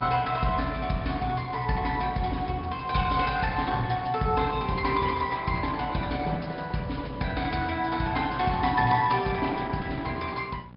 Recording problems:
treble missing; nothing above 5.2 kHz
codec artefacts; Opus, log-spectral distance 4 dB
hum; 60 Hz, harmonics up to 1.7 kHz, SNR 20 dB

